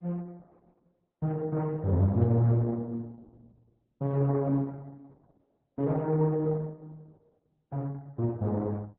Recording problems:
lossy codec; MP3, then Opus, log-spectral distance 2 dB

